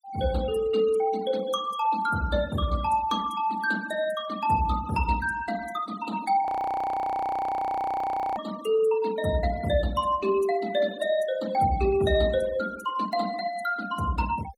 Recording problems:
noise reduction artefacts; signal-to-artefact ratio 18 dB
frozen audio; at 6.5 s for 2 s

